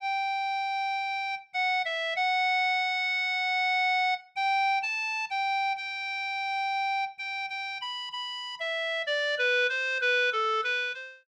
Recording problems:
none

